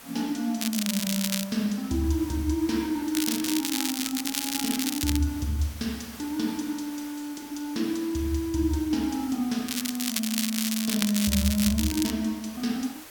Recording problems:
hiss; SNR 16 dB
crackle; at 0.5 s, from 3 to 5 s and from 9.5 to 12 s; loose cable, SNR 1 dB

